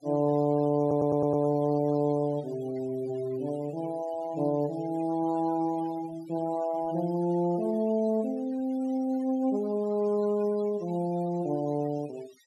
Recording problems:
denoising artefacts; signal-to-artefact ratio 22 dB
stutter; at 1 s

